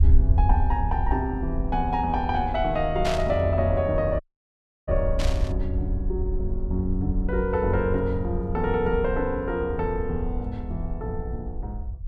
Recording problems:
rumble; below 72 Hz, SNR 3 dB
burst of static; at 3 s and at 5 s; peak -1 dB vs average level
audio cutting out; at 4 s for 0.5 s

